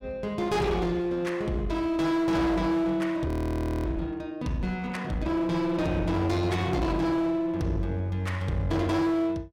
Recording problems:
distortion; hard clipping, uneven, signal-to-distortion ratio 6 dB
frozen audio; at 3.5 s for 0.5 s

